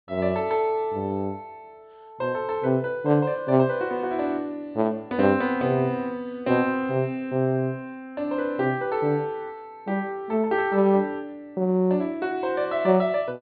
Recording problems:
low-pass filter; nothing above 4.6 kHz

